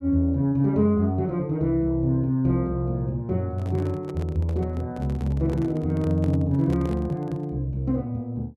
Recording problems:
handling noise; from 3.5 to 7.5 s; peak -8 dB vs average level

